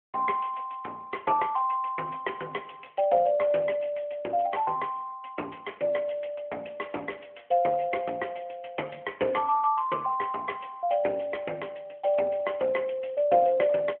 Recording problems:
telephone audio; 300 Hz to 3.1 kHz, AMR-NB

